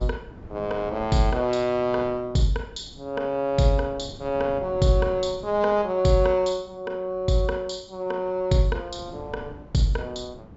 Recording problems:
treble cut off; nothing above 8 kHz
wind noise; below 290 Hz, SNR 19 dB

